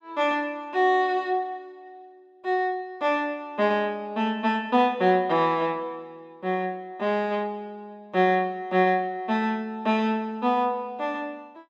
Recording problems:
none

